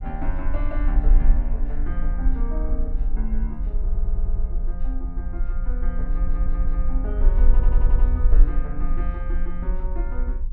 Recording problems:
rumble; below 42 Hz, strongest tone 22 Hz, SNR -10 dB
stutter; at 4 s, at 6 s and at 7.5 s

